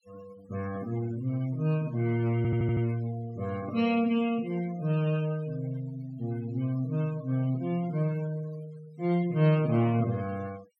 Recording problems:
denoising artefacts; signal-to-artefact ratio 20 dB
audio stuttering; at 2.5 s

